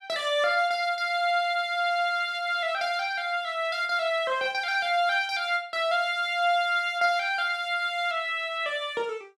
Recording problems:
none

